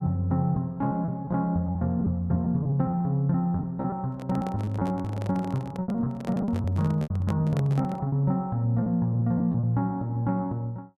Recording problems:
lost packets; 12% of the sound replaced, filled with repeated pitch periods
handling noise; from 4 to 8 s; peak -5 dB vs average level

